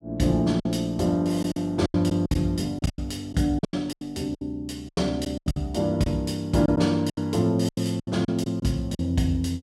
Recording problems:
packet loss; 13% of the sound replaced, filled with silence

